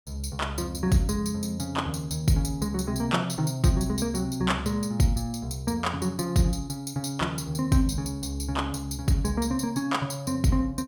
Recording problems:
none

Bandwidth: 17 kHz